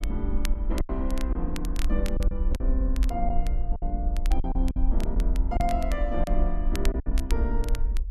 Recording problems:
low-frequency rumble; below 50 Hz, SNR -4 dB
crackle; vinyl, SNR 12 dB
lost packets; 7% of the sound replaced, filled with silence

